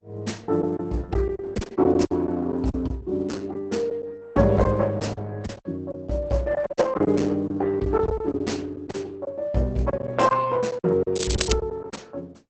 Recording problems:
codec artefacts; Opus, log-spectral distance 3 dB, nothing above 8 kHz
lost packets; 10% of the sound replaced, filled with silence
crackle; at 11 s; loose cable, SNR 8 dB

